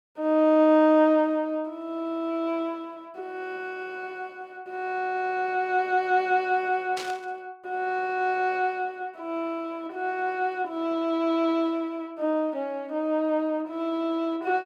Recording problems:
static burst; at 7 s; peak -5 dB vs average level

